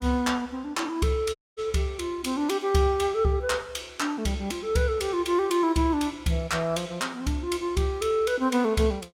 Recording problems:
audio cutting out; at 1.5 s

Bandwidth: 16.5 kHz